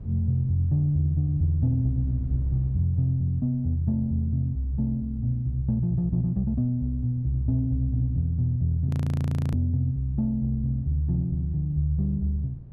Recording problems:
wind on the microphone; below 150 Hz, SNR 18 dB
audio freezing; at 9 s for 0.5 s

